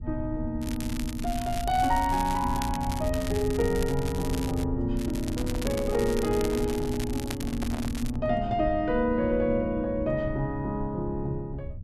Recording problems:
rumble; below 100 Hz, SNR 8 dB
crackling; from 0.5 to 4.5 s and from 5 to 8 s; loose cable, SNR 12 dB
microphone handling noise; from 5 to 8.5 s; peak -5 dB vs average level

